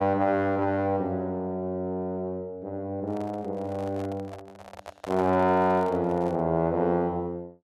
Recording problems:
handling noise; from 3 to 6.5 s; peak -6 dB vs average level

